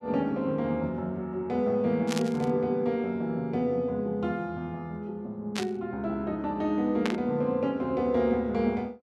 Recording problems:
burst of static; at 2 s, at 5.5 s and at 7 s; peak +1 dB vs average level

